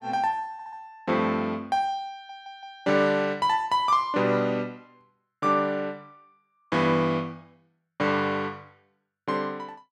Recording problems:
stutter; at 0.5 s and at 2 s

